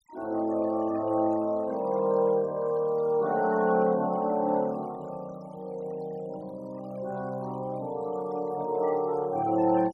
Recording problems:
noise reduction artefacts; signal-to-artefact ratio 23 dB

